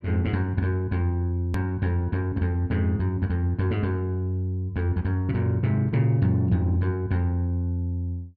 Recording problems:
click at an edit; at 1.5 s

